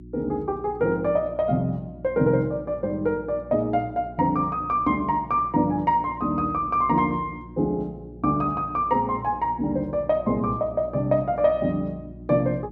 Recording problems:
hum; 60 Hz, harmonics up to 360 Hz, SNR 18 dB

